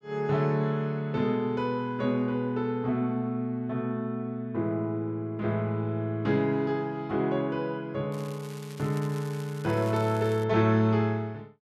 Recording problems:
crackle; from 8 to 10 s; loose cable, SNR 20 dB

